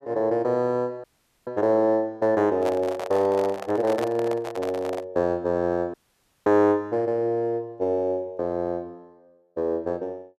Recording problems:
dropout; at 1 s and at 6 s for 0.5 s
handling noise; from 2.5 to 5 s; peak -2 dB vs average level

